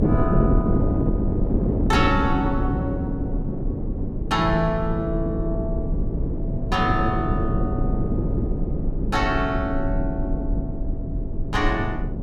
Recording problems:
rumble; below 56 Hz, SNR 6 dB
wind on the microphone; below 310 Hz, SNR 0 dB

